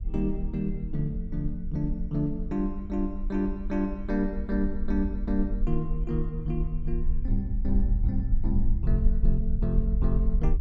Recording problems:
rumble; below 52 Hz, SNR 1 dB

